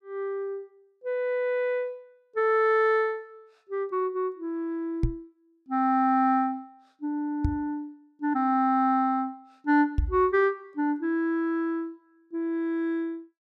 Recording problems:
microphone bump; at 5 s, at 7.5 s and at 10 s; peak +5 dB vs average level

